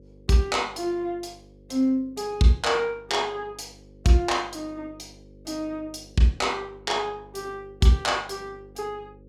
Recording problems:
hum; 50 Hz, harmonics up to 550 Hz, SNR 25 dB

